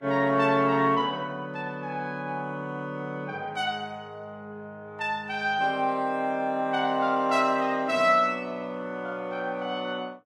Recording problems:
lossy codec; Vorbis, log-spectral distance 2 dB, nothing above 12 kHz

